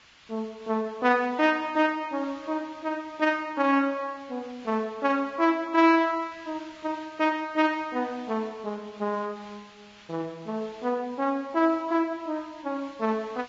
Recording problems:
lossy compression; Vorbis, log-spectral distance 3 dB
hiss; SNR 24 dB

